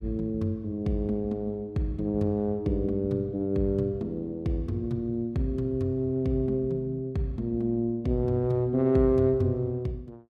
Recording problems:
none

